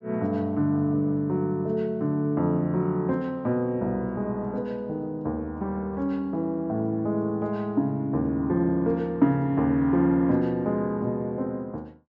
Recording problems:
low-pass filter; nothing above 8 kHz

